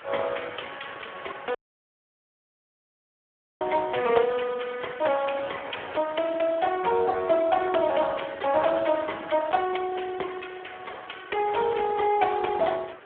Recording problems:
telephone audio; 340 Hz to 2.3 kHz, Speex
hiss; SNR 18 dB
audio cutting out; at 1.5 s for 2 s

